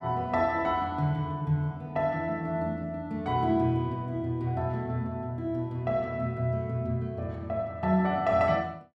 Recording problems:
none

